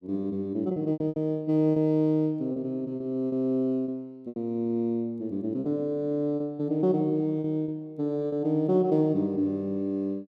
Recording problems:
lost packets; 7% of the sound replaced, filled with repeated pitch periods

